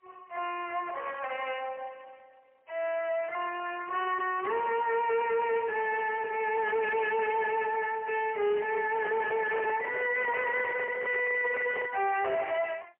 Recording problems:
phone line; 370 Hz to 3.1 kHz, AMR-NB, then MP3
distorted audio; soft clipping, signal-to-distortion ratio 8 dB
microphone handling noise; from 9 to 12 s; peak -2 dB vs average level

